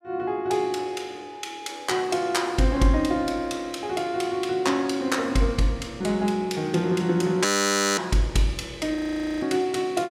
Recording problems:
frozen audio; at 7.5 s for 0.5 s and at 9 s

